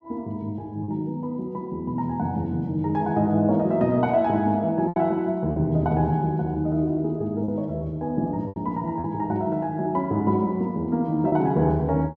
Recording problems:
packet loss; 3% of the sound replaced, filled with repeated pitch periods

